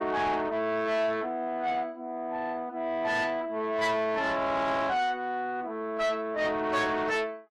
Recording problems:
codec artefacts; AAC, log-spectral distance 2 dB, nothing above 13.1 kHz
distortion; soft clipping, signal-to-distortion ratio 11 dB

